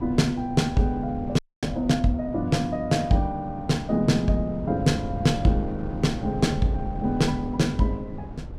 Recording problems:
wind noise; below 200 Hz, SNR 11 dB
audio freezing; at 1.5 s

